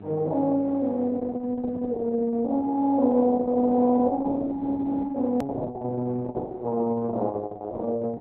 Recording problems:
codec artefacts; Opus, log-spectral distance 2 dB, nothing above 13.1 kHz
electrical hum; 50 Hz, harmonics up to 1.6 kHz, SNR 24 dB
edit click; at 5.5 s

